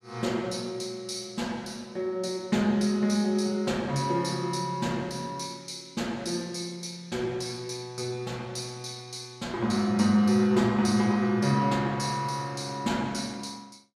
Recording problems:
none

